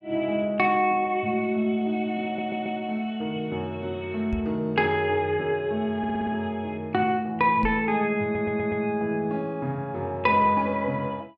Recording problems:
stutter; at 2.5 s, at 6 s and at 8 s
knock on the microphone; at 4.5 s and at 7.5 s; peak -2 dB vs average level

